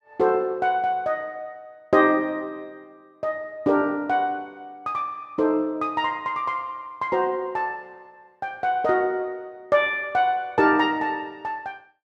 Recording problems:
none

